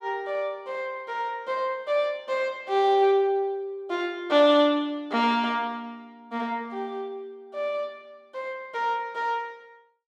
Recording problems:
none

